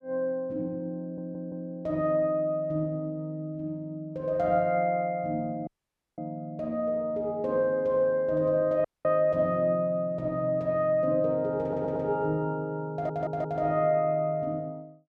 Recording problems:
audio stuttering; at 1 s, at 12 s and at 13 s
audio cutting out; at 5.5 s for 0.5 s and at 9 s

